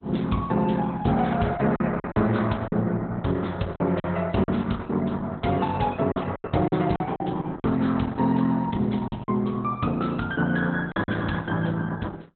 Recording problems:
lossy compression; Opus, log-spectral distance 4 dB, nothing above 4 kHz
packet loss; 6% of the sound replaced, filled with silence

